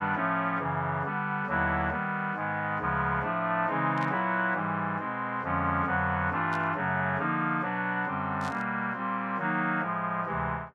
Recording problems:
static burst; at 4 s, at 6.5 s and at 8.5 s; peak -11 dB vs average level

